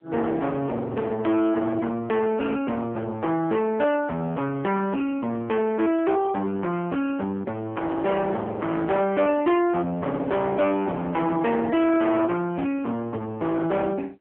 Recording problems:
phone line; 240 Hz to 3.5 kHz, AMR-NB
distorted audio; hard clipping, signal-to-distortion ratio 8 dB

